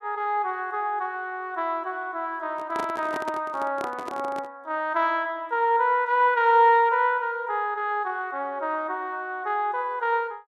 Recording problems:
microphone handling noise; from 2.5 to 4.5 s; peak -5 dB vs average level

